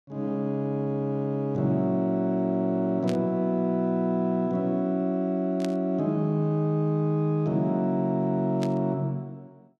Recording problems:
burst of static; at 3 s, at 5.5 s and at 8.5 s; peak -8 dB vs average level

